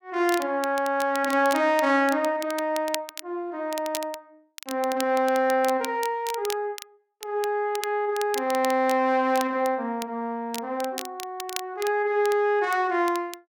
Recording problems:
crackling; vinyl, SNR 14 dB

